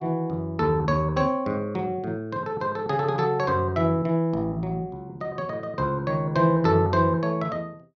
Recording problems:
none

